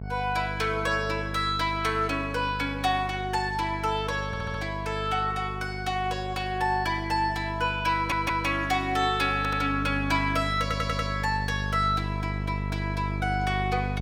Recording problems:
electrical hum; 50 Hz, harmonics up to 900 Hz, SNR 7 dB
audio stuttering; 4 times, first at 4.5 s

